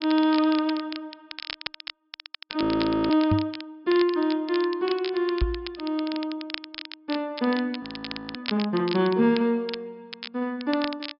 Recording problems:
low-pass filter; nothing above 5.5 kHz
crackle; vinyl, SNR 12 dB
frozen audio; at 2.5 s and at 8 s for 0.5 s
microphone thump; at 3.5 s and at 5.5 s; peak +4 dB vs average level

